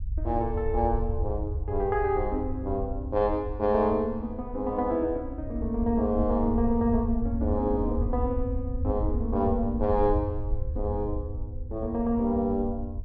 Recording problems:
low-frequency rumble; below 84 Hz, SNR 6 dB

